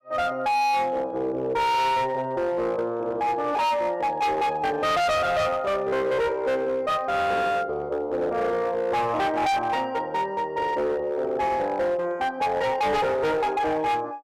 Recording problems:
distortion; hard clipping, signal-to-distortion ratio 7 dB

